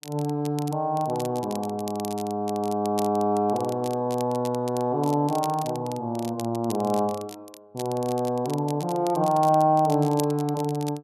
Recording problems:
crackling; vinyl, SNR 17 dB

